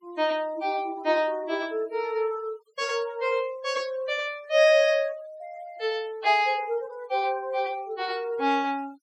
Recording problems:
denoising artefacts; signal-to-artefact ratio 27 dB

